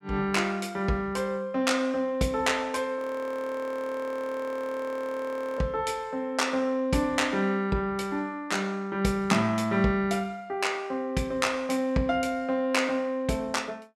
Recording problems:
frozen audio; at 3 s for 2.5 s

